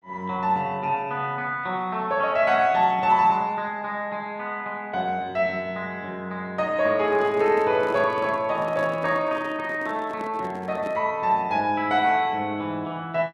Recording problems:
handling noise; from 7 to 11 s; peak -8 dB vs average level

